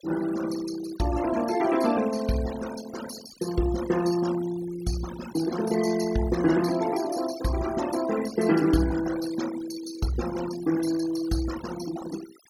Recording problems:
noise reduction artefacts; signal-to-artefact ratio 12 dB

